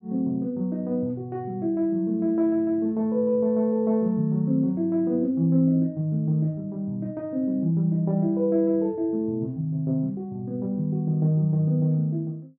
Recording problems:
none

